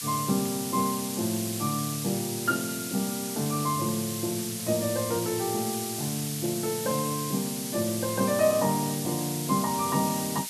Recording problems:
hiss; slope +5 dB per octave, SNR 4 dB

